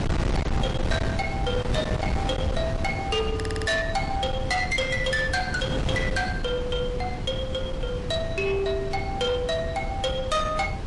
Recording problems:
lossy compression; MP3, log-spectral distance 2 dB, nothing above 11 kHz
distortion; soft clipping, signal-to-distortion ratio 8 dB
wind noise; below 330 Hz, SNR 3 dB
stutter; at 3.5 s

